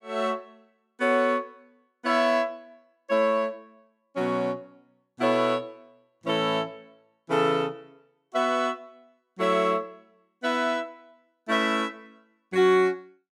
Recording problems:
none

